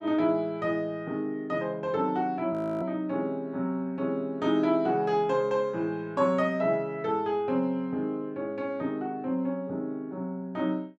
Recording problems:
audio freezing; at 2.5 s

